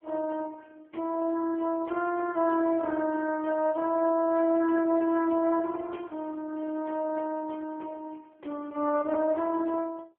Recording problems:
telephone audio; 240 Hz to 2.1 kHz, AMR-NB

